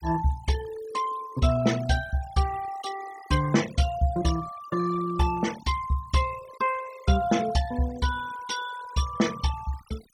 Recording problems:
denoising artefacts; signal-to-artefact ratio 14 dB

